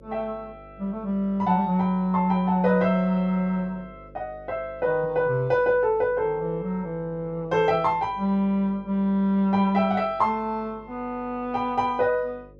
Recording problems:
electrical hum; 50 Hz, harmonics up to 550 Hz, SNR 24 dB

